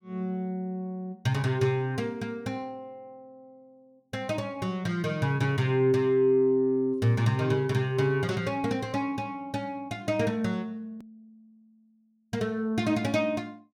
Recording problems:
click at an edit; at 11 s

